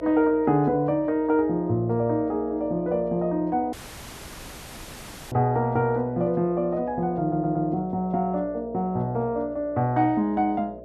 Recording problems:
hum; 60 Hz, harmonics up to 660 Hz, SNR 17 dB
dropout; at 3.5 s for 1.5 s
audio stuttering; at 7 s

